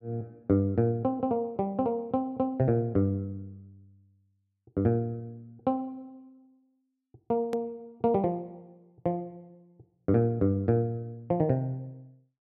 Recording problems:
click at an edit; at 7.5 s

